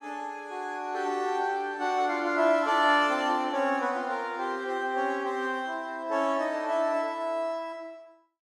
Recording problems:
none

